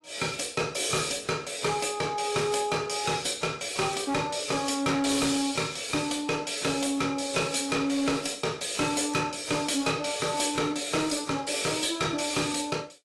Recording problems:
lossy codec; AAC, log-spectral distance 5 dB, nothing above 11.3 kHz
distorted audio; hard clipping, signal-to-distortion ratio 7 dB

